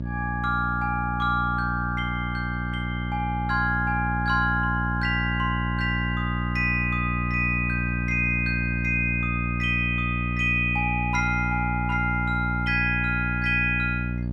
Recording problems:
hum; 60 Hz, harmonics up to 600 Hz, SNR 3 dB

